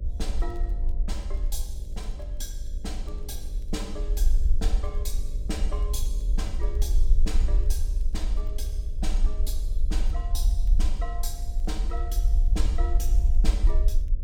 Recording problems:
electrical hum; 50 Hz, harmonics up to 600 Hz, SNR 8 dB
rumble; below 48 Hz, strongest tone 20 Hz, SNR -10 dB
crackle; vinyl, SNR 28 dB

